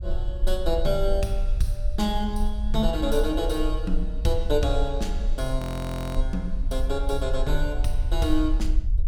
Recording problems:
low-frequency rumble; below 46 Hz, strongest tone 20 Hz, SNR 1 dB
audio freezing; at 5.5 s for 0.5 s

